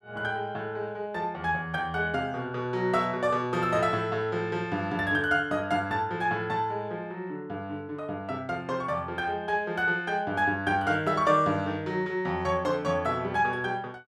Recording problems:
none

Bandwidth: 14 kHz